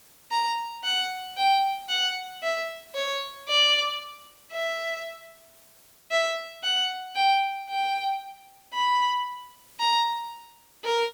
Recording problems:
hiss; slope -1 dB per octave, SNR 27 dB

